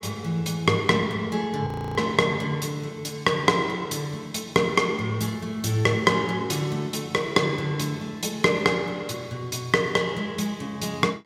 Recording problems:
audio freezing; at 1.5 s

